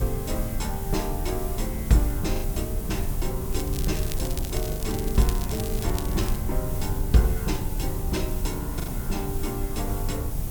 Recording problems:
background hiss; slope -1 dB per octave, SNR 8 dB
rumble; below 82 Hz, SNR 4 dB
wind on the microphone; below 110 Hz, SNR 7 dB
packet loss; 2% of the sound replaced, filled with the last packet
crackling; from 3.5 to 6.5 s; loose cable, SNR 9 dB

